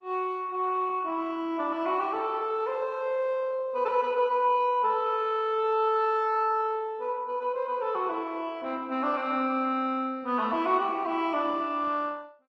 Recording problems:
lossy codec; Opus, log-spectral distance 2 dB

